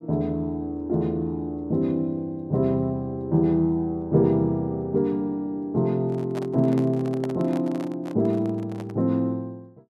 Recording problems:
microphone handling noise; from 6 to 9 s; peak -6 dB vs average level

